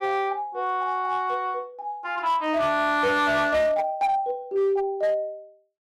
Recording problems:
distortion; hard clipping, uneven, signal-to-distortion ratio 12 dB

